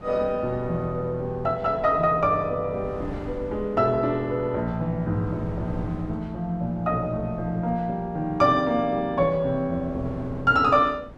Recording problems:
wind on the microphone; below 330 Hz, SNR 17 dB

